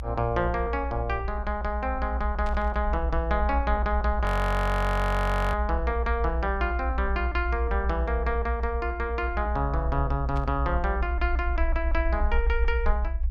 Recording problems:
low-frequency rumble; below 64 Hz, strongest tone 58 Hz, SNR 1 dB
burst of static; at 2.5 s and at 10 s; peak -11 dB vs average level
audio freezing; at 4.5 s for 1.5 s

